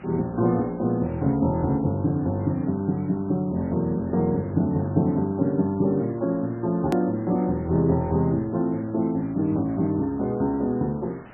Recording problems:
codec artefacts; MP3, log-spectral distance 3 dB, nothing above 13.1 kHz
hiss; SNR 21 dB
hard cut with a click; at 7 s

